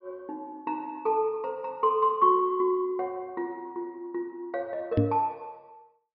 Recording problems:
treble missing; nothing above 5.5 kHz
microphone bump; at 5 s; peak +7 dB vs average level

